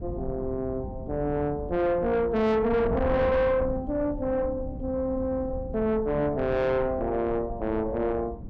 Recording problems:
distortion; soft clipping, signal-to-distortion ratio 8 dB
wind noise; below 260 Hz, SNR 10 dB

